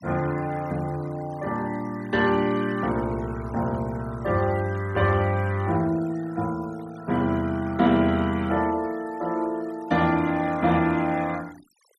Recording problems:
noise reduction artefacts; signal-to-artefact ratio 21 dB

